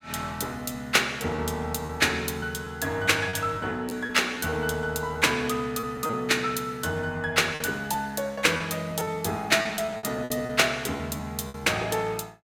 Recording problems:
lost packets; 8% of the sound replaced, filled with repeated pitch periods

